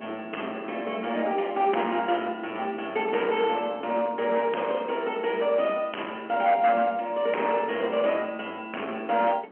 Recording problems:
telephone audio; 240 Hz to 3.2 kHz, G.711
distortion; hard clipping, uneven, signal-to-distortion ratio 13 dB
wind on the microphone; below 720 Hz, SNR 19 dB

